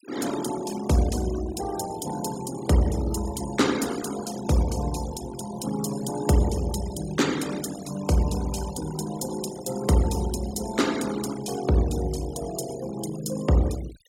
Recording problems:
noise reduction artefacts; signal-to-artefact ratio 13 dB

